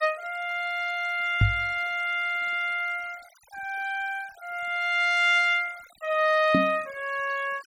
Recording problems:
noise reduction artefacts; signal-to-artefact ratio 23 dB
microphone bump; at 1.5 s and at 6.5 s; peak +7 dB vs average level

